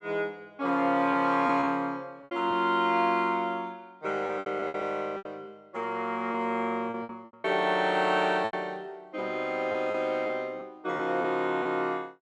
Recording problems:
lost packets; 7% of the sound replaced, filled with repeated pitch periods

